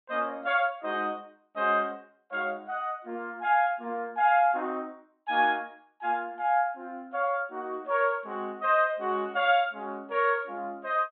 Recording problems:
low-pass filter; nothing above 4 kHz

